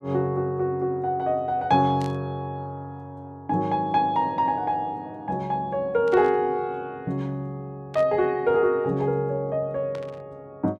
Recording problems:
burst of static; 4 times, first at 2 s; peak -13 dB vs average level

